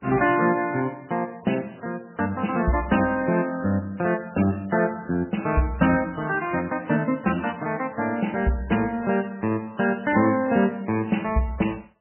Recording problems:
codec artefacts; MP3, log-spectral distance 4 dB, nothing above 2.7 kHz

